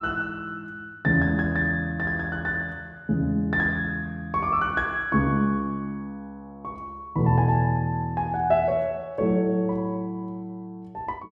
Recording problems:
none

